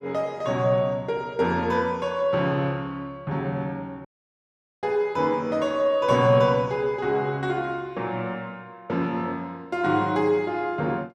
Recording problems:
dropout; at 4 s for 1 s

